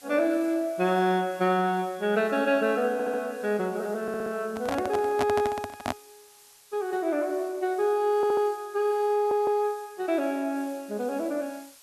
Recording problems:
hiss; slope +2 dB per octave, SNR 24 dB
stutter; 4 times, first at 3 s
handling noise; from 4.5 to 6 s; peak +3 dB vs average level

